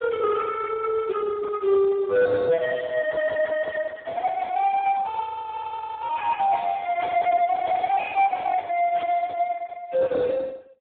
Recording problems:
telephone audio; 900 Hz to 2.2 kHz, Speex
distortion; soft clipping, signal-to-distortion ratio 11 dB
static burst; at 7 s and at 9 s; peak -9 dB vs average level

